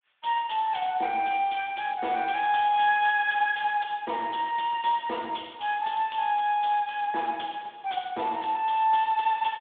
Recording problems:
phone line; 280 Hz to 3.6 kHz, Speex

